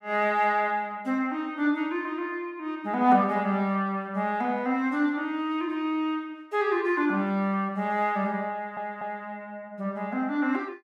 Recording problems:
audio stuttering; at 8.5 s

